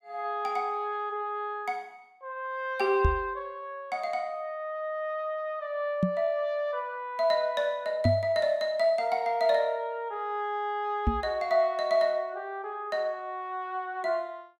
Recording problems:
microphone thump; 4 times, first at 3 s; peak +7 dB vs average level

